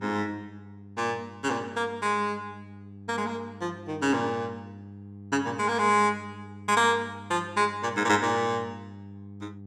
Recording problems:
electrical hum; 50 Hz, harmonics up to 500 Hz, SNR 17 dB

